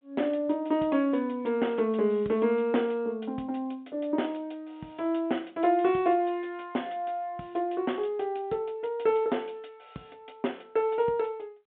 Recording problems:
telephone audio; 170 Hz to 3.6 kHz, G.726

